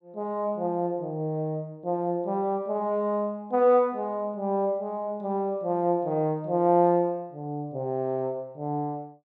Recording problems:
none

